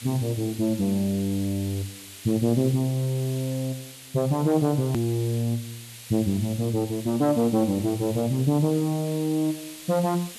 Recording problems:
background hiss; SNR 15 dB
edit click; at 5 s

